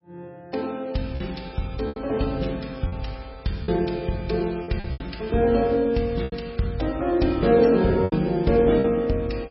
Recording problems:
lossy compression; MP3, log-spectral distance 3 dB, nothing above 5.5 kHz
packet loss; 6% of the sound replaced, filled with repeated pitch periods

